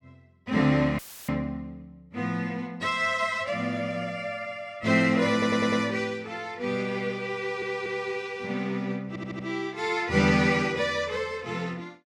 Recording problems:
audio cutting out; at 1 s; filled with static
audio stuttering; at 5.5 s, at 7.5 s and at 9 s

